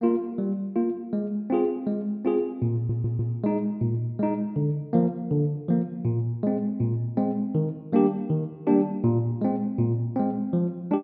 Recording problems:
audio stuttering; at 3 s

